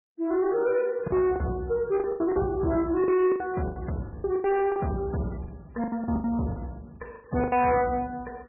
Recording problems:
codec artefacts; MP3, log-spectral distance 2 dB, nothing above 2.4 kHz
distorted audio; soft clipping, signal-to-distortion ratio 10 dB
lost packets; 13% of the sound replaced, filled with the last packet

